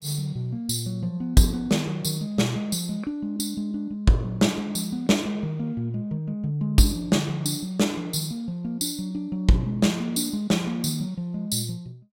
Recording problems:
none

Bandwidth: 16 kHz